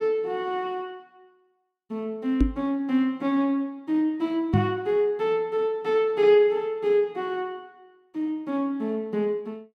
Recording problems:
knock on the microphone; at 2.5 s and at 4.5 s; peak +7 dB vs average level

